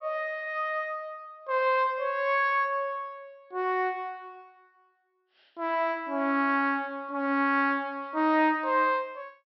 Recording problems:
treble cut off; nothing above 5.7 kHz

